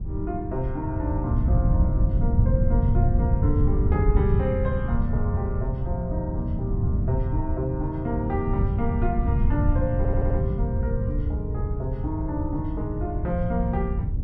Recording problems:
wind noise; below 110 Hz, SNR -4 dB
audio stuttering; at 10 s

